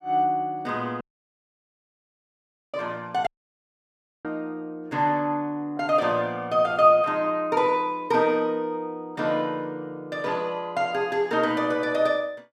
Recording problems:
dropout; at 1 s for 1.5 s and at 3.5 s for 1 s

